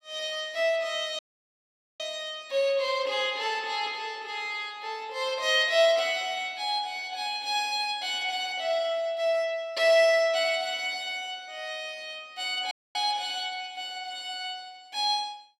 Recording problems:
dropout; at 1 s for 1 s and at 13 s

